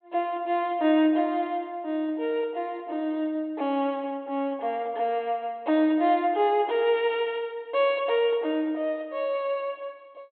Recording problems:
treble cut off; nothing above 4 kHz

